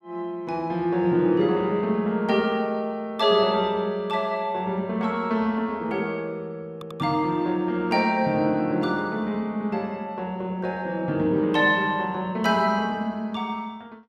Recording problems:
audio stuttering; at 6.5 s

